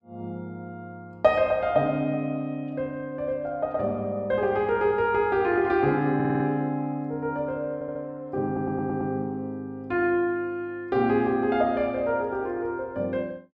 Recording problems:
audio stuttering; at 6 s, at 7.5 s and at 8.5 s

